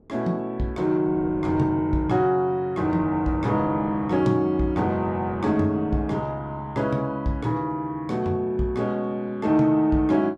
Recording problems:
wind noise; below 440 Hz, SNR 21 dB

